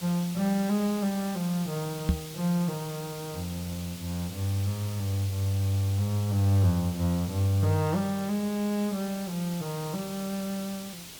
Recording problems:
hiss; SNR 13 dB
microphone thump; at 2 s; peak +7 dB vs average level

